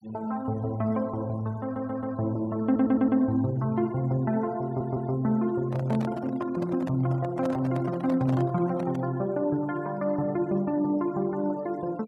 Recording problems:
denoising artefacts; signal-to-artefact ratio 25 dB
audio stuttering; at 1.5 s, at 2.5 s and at 4.5 s
handling noise; from 5.5 to 9 s; peak -5 dB vs average level

